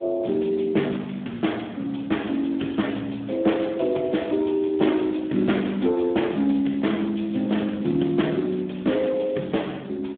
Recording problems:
telephone audio; 150 Hz to 3.5 kHz, Speex

